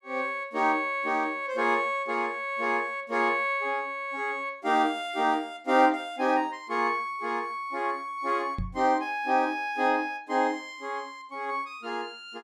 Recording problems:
microphone thump; at 8.5 s; peak -2 dB vs average level

